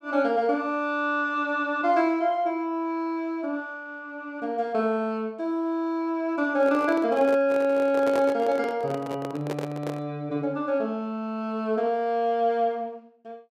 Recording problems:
microphone handling noise; from 6.5 to 10 s; peak -1 dB vs average level

